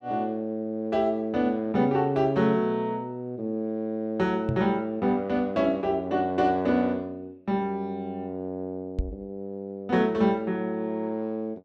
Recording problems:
microphone thump; at 4.5 s and at 9 s; peak +2 dB vs average level

